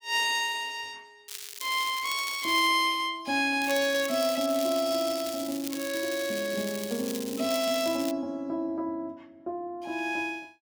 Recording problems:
crackle; from 1.5 to 2.5 s and from 3.5 to 8 s; loose cable, SNR 10 dB

